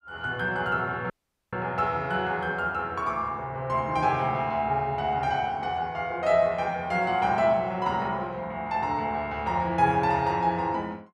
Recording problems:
audio cutting out; at 1 s

